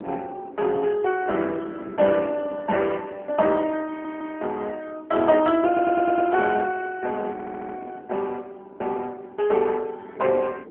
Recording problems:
telephone audio; 260 Hz to 3 kHz, AMR-NB
wind noise; below 470 Hz, SNR 19 dB
audio stuttering; at 4 s, at 5.5 s and at 7.5 s

